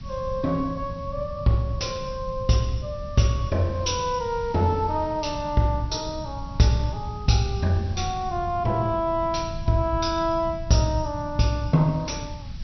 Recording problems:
low-pass filter; nothing above 5.9 kHz
hiss; slope +1 dB per octave, SNR 27 dB
low-frequency rumble; below 140 Hz, SNR 12 dB

